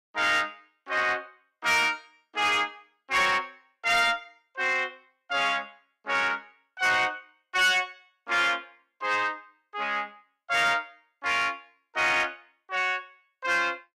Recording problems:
distortion; soft clipping, signal-to-distortion ratio 12 dB

